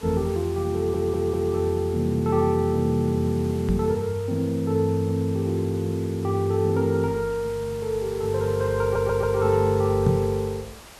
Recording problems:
background hiss; slope -2 dB per octave, SNR 20 dB
stutter; at 0.5 s and at 9 s
microphone thump; at 3.5 s and at 10 s; peak +4 dB vs average level

